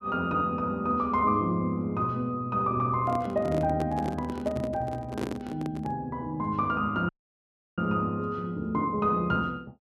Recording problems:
microphone handling noise; from 3 to 6 s; peak -1 dB vs average level
dropout; at 7 s for 0.5 s

